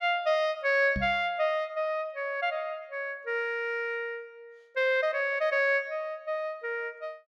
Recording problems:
microphone thump; at 1 s; peak -1 dB vs average level

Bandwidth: 13.5 kHz